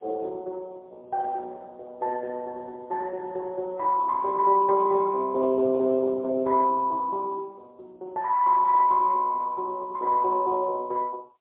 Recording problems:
phone line; 320 Hz to 2.1 kHz, AMR-NB, then MP3

